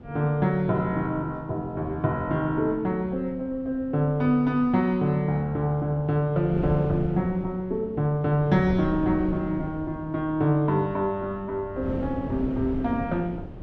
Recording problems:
wind noise; below 310 Hz, SNR 12 dB

